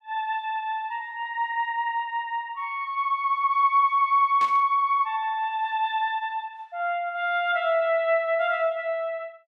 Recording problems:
burst of static; at 4.5 s; peak -10 dB vs average level

